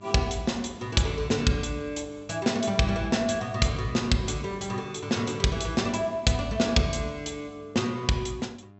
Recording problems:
treble missing; nothing above 7.9 kHz
mains hum; 50 Hz, harmonics up to 1.7 kHz, SNR 24 dB

